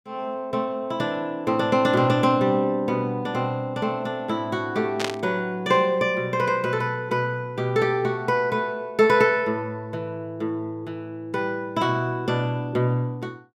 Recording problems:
static burst; at 5 s; peak +1 dB vs average level

